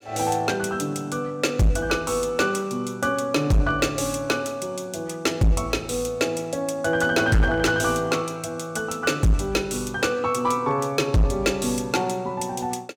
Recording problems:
distorted audio; hard clipping, signal-to-distortion ratio 10 dB

